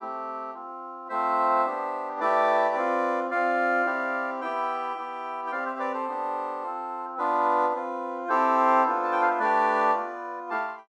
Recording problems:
none

